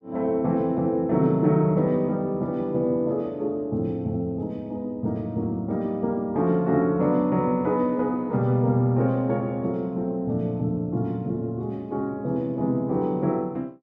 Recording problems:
none

